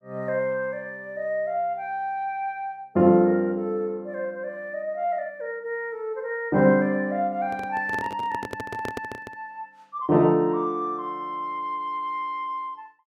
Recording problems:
handling noise; from 7.5 to 9.5 s; peak -3 dB vs average level

